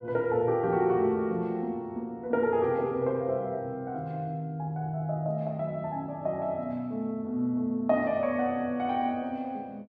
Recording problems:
none

